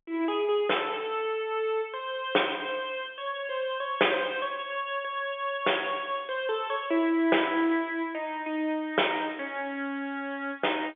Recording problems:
telephone audio; 300 Hz to 3.5 kHz, G.711

